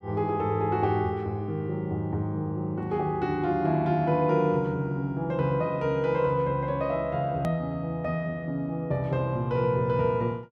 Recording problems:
click at an edit; at 7.5 s

